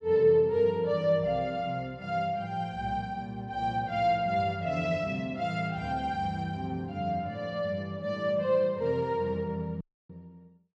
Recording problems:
audio cutting out; at 10 s

